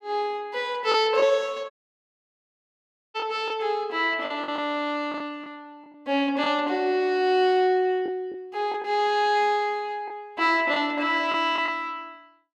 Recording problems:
lost packets; 5% of the sound replaced, filled with the last packet
audio cutting out; at 1.5 s for 1.5 s

